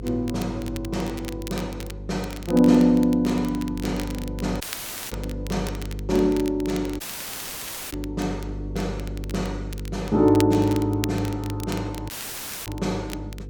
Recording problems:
mains hum; 50 Hz, harmonics up to 500 Hz, SNR 11 dB
crackling; vinyl, SNR 17 dB
audio cutting out; at 4.5 s for 0.5 s, at 7 s for 1 s and at 12 s for 0.5 s

